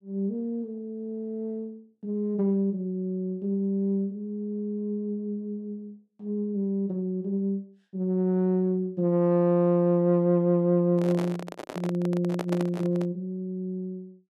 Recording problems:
handling noise; from 11 to 13 s; peak -1 dB vs average level

